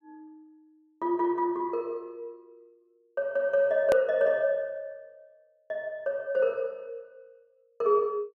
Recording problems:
click at an edit; at 4 s

